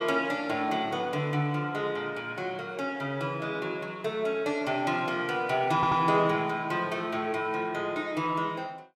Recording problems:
stutter; at 5.5 s

